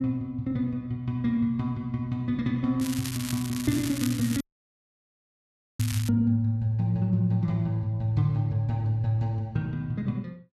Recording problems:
crackling; from 3 to 6 s; loose cable, SNR 10 dB
dropout; at 4.5 s for 1.5 s

